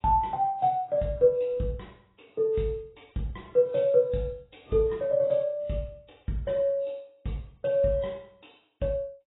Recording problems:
lossy compression; AAC, log-spectral distance 4 dB, nothing above 3.8 kHz

